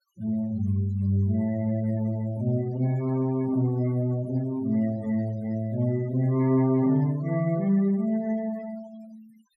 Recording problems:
denoising artefacts; signal-to-artefact ratio 21 dB

